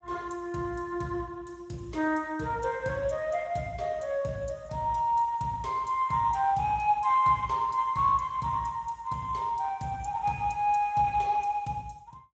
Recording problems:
codec artefacts; Speex, log-spectral distance 3 dB, nothing above 7.3 kHz

